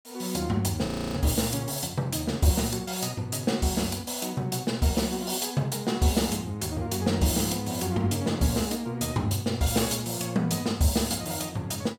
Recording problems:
frozen audio; at 1 s

